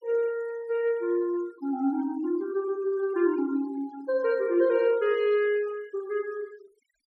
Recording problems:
noise reduction artefacts; signal-to-artefact ratio 24 dB

